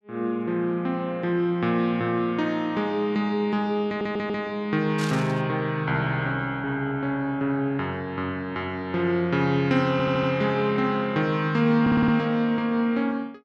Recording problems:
audio stuttering; at 4 s, at 10 s and at 12 s
burst of static; at 5 s; peak -6 dB vs average level

